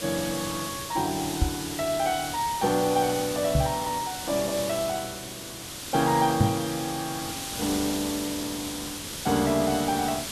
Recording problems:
codec artefacts; Opus, log-spectral distance 2 dB
background hiss; SNR 6 dB
microphone bump; at 1.5 s, at 3.5 s and at 6.5 s; peak +9 dB vs average level

